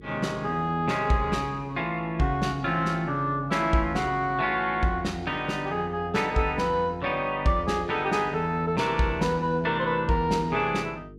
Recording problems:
hum; 50 Hz, harmonics up to 450 Hz, SNR 21 dB

